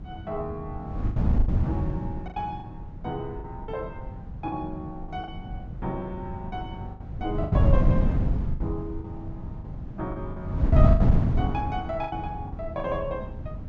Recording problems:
low-pass filter; nothing above 8 kHz
wind noise; below 150 Hz, SNR -6 dB
lost packets; 9% of the sound replaced, filled with the last packet

